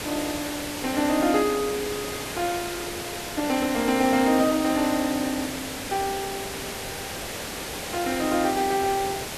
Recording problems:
hiss; slope -3 dB per octave, SNR 6 dB

